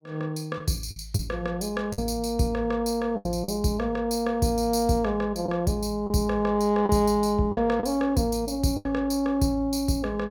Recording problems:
lost packets; 5% of the sound replaced, filled with the last packet

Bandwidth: 17.5 kHz